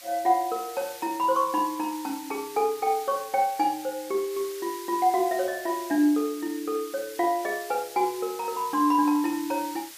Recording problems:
background hiss; slope +3 dB per octave, SNR 15 dB

